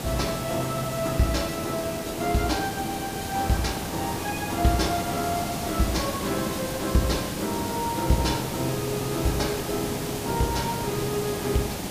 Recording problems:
hiss; SNR 3 dB

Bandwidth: 15 kHz